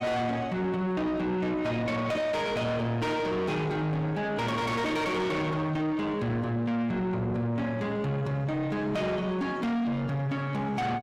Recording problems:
distorted audio; soft clipping, signal-to-distortion ratio 7 dB

